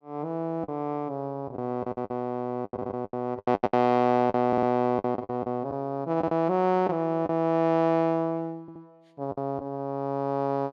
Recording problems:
packet loss; 10% of the sound replaced, filled with the last packet
stutter; at 3 s, at 4.5 s and at 8.5 s

